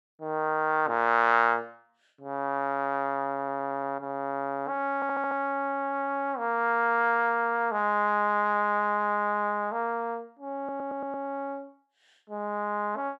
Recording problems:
stutter; at 3.5 s, at 5 s and at 11 s

